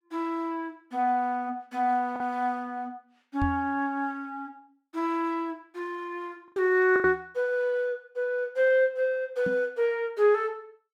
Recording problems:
packet loss; 1.5% of the sound replaced, filled with the last packet
microphone bump; at 3.5 s, at 7 s and at 9.5 s; peak -1 dB vs average level

